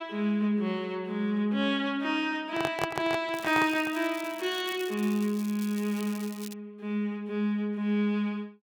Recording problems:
handling noise; from 2.5 to 4 s; peak +2 dB vs average level
crackle; from 3.5 to 6.5 s; loose cable, SNR 17 dB

